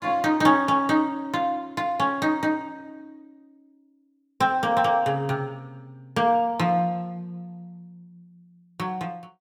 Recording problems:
none

